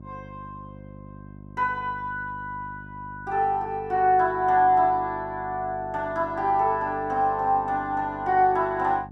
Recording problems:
hum; 50 Hz, harmonics up to 700 Hz, SNR 19 dB

